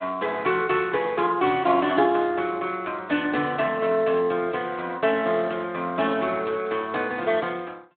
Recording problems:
phone line; 170 Hz to 3.7 kHz, Speex

